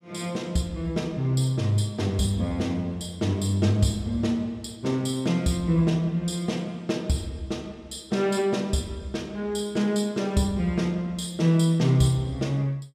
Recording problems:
none

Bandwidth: 14.5 kHz